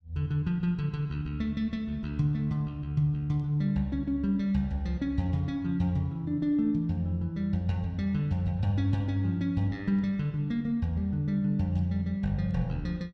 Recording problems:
none

